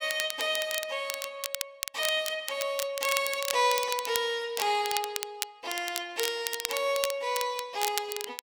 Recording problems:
crackle; vinyl, SNR 5 dB

